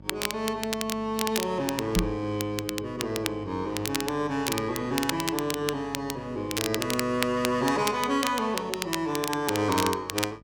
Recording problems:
hum; 50 Hz, harmonics up to 900 Hz, SNR 20 dB
crackling; vinyl, SNR 5 dB
knock on the microphone; at 2 s; peak +6 dB vs average level

